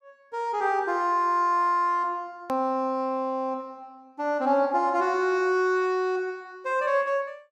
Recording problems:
click at an edit; at 2.5 s

